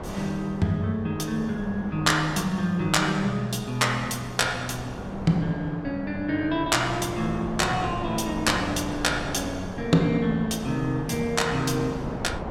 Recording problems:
wind on the microphone; below 710 Hz, SNR 10 dB

